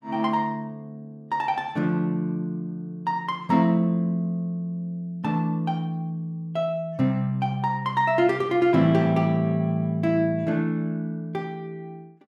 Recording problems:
none

